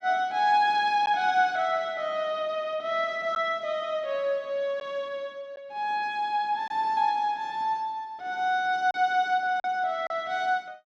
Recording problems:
lost packets; 1.5% of the sound replaced, filled with silence

